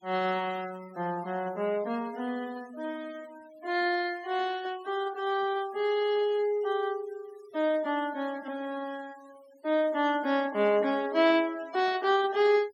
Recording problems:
denoising artefacts; signal-to-artefact ratio 22 dB

